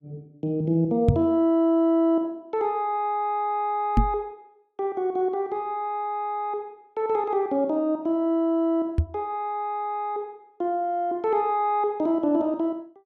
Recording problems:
knock on the microphone; at 1 s, at 4 s and at 9 s; peak +9 dB vs average level

